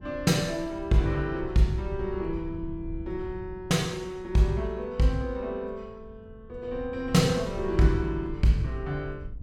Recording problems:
rumble; below 100 Hz, SNR 15 dB

